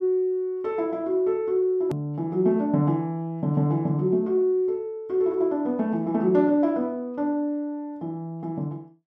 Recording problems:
click at an edit; at 2 s

